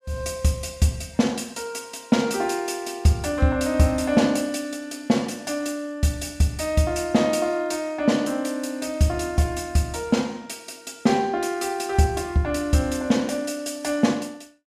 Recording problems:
none

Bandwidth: 14.5 kHz